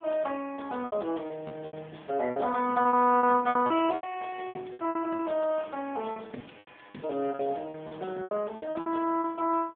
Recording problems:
telephone audio; 190 Hz to 3.4 kHz, AMR-NB
lost packets; 15% of the sound replaced, filled with repeated pitch periods

